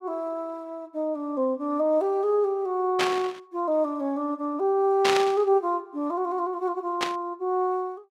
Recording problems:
static burst; at 3 s, at 5 s and at 7 s; peak +5 dB vs average level

